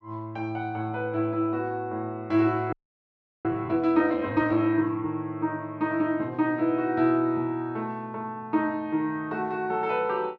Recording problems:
frozen audio; at 2.5 s for 0.5 s

